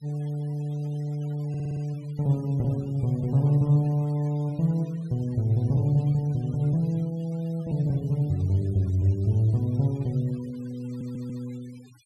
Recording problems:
denoising artefacts; signal-to-artefact ratio 27 dB
stutter; at 1.5 s and at 11 s

